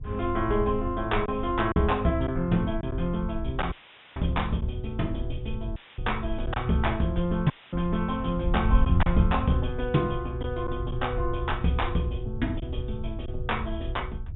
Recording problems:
low-pass filter; nothing above 3.7 kHz
wind on the microphone; below 84 Hz, SNR 5 dB
packet loss; 2% of the sound replaced, filled with silence
dropout; at 3.5 s, at 6 s and at 7.5 s; filled with static

